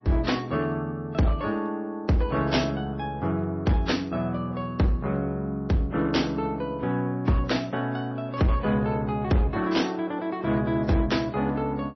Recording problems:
codec artefacts; MP3, then AAC, log-spectral distance 2 dB, nothing above 5.8 kHz
distortion; hard clipping, signal-to-distortion ratio 11 dB

